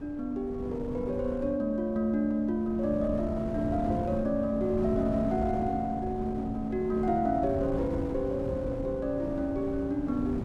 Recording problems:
wind on the microphone; below 330 Hz, SNR 8 dB

